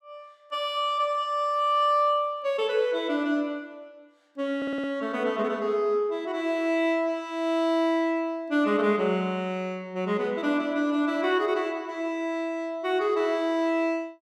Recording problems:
stutter; at 4.5 s

